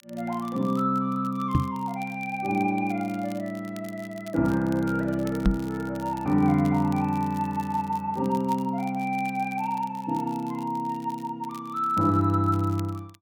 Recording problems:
crackle; vinyl, SNR 24 dB
microphone thump; at 1.5 s and at 5.5 s; peak +8 dB vs average level

